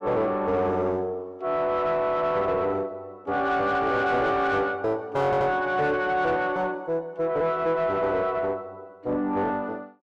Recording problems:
distortion; soft clipping, signal-to-distortion ratio 10 dB
audio stuttering; at 5.5 s

